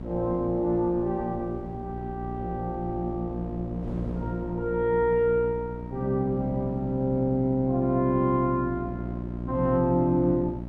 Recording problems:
hum; 60 Hz, harmonics up to 960 Hz, SNR 9 dB
wind noise; below 340 Hz, SNR 19 dB

